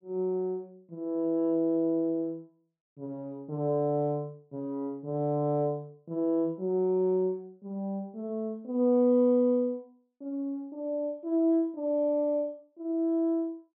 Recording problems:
low-pass filter; nothing above 4 kHz

